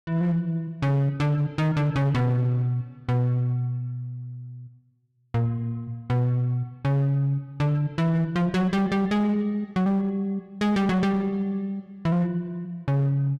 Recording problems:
distorted audio; hard clipping, uneven, signal-to-distortion ratio 11 dB

